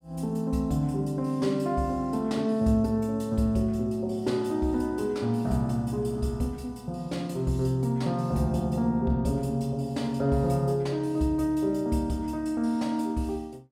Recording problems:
none

